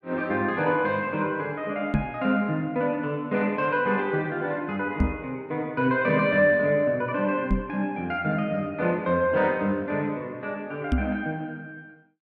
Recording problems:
microphone bump; 4 times, first at 2 s; peak +6 dB vs average level

